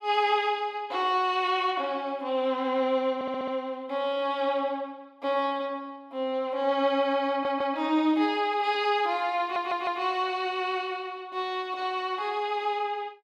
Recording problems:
audio stuttering; at 3 s, at 7.5 s and at 9.5 s

